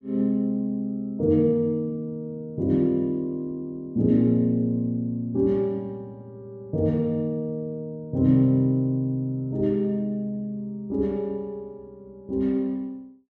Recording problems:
none

